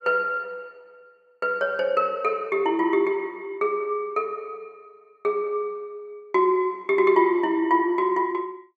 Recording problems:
none

